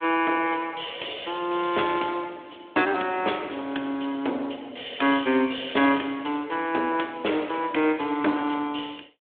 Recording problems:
phone line; 240 Hz to 3.6 kHz, Speex

